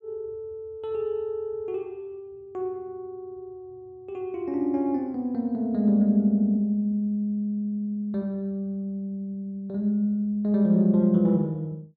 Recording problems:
none

